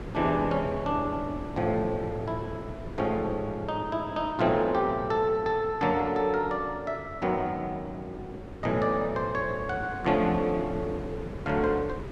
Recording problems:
wind on the microphone; below 420 Hz, SNR 12 dB

